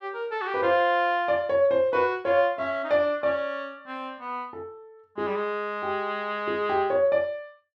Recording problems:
none

